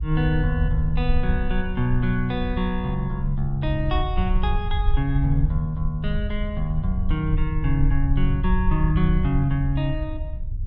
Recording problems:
low-frequency rumble; below 68 Hz, SNR 2 dB

